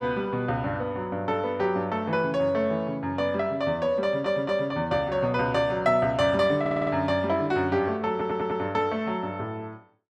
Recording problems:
audio stuttering; at 4 s, at 6.5 s and at 8 s

